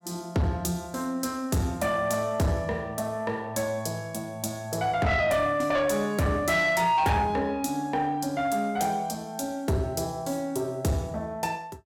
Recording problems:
distortion; soft clipping, signal-to-distortion ratio 11 dB

